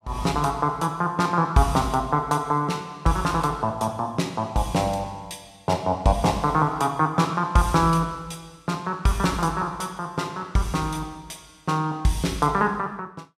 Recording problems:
none

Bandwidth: 14.5 kHz